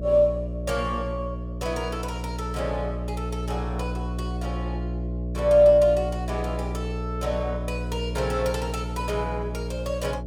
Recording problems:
hum; 60 Hz, harmonics up to 660 Hz, SNR 5 dB

